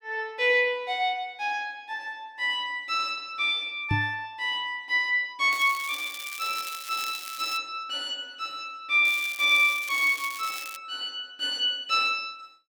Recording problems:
knock on the microphone; at 4 s; peak +2 dB vs average level
crackling; from 5.5 to 7.5 s and from 9 to 11 s; loose cable, SNR 13 dB

